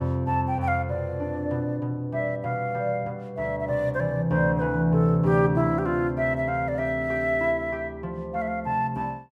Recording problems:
none

